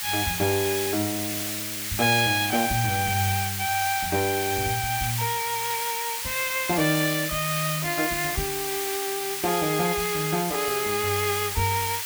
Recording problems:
hiss; SNR 3 dB

